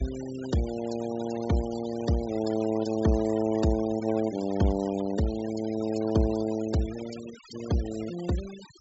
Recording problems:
treble cut off; nothing above 8 kHz
denoising artefacts; signal-to-artefact ratio 15 dB

